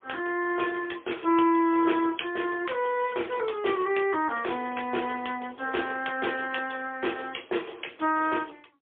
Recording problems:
phone line; 280 Hz to 3.4 kHz, AMR-NB, then MP3

